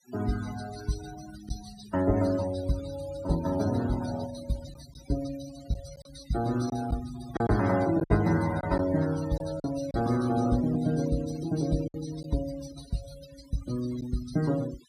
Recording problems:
noise reduction artefacts; signal-to-artefact ratio 14 dB
lost packets; 3% of the sound replaced, filled with silence

